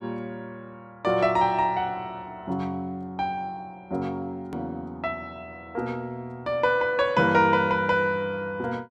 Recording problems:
edit click; at 4.5 s

